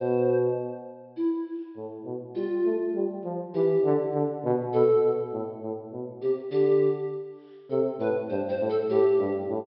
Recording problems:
treble missing; nothing above 5.6 kHz

